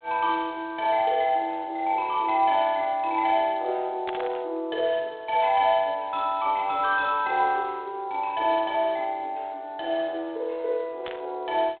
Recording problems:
telephone audio; 320 Hz to 3.6 kHz, G.726
static burst; at 4 s and at 11 s; peak -5 dB vs average level

